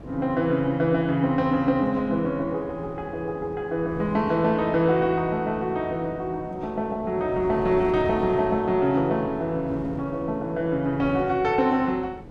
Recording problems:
wind noise; below 380 Hz, SNR 15 dB

